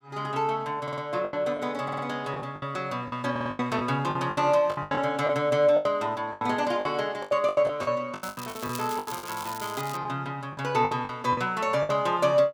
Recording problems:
packet loss; 14% of the sound replaced, filled with the last packet
audio stuttering; at 1 s, at 2 s and at 3.5 s
crackling; from 8 to 10 s; loose cable, SNR 13 dB

